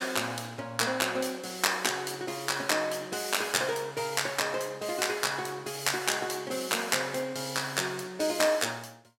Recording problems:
none

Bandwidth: 16 kHz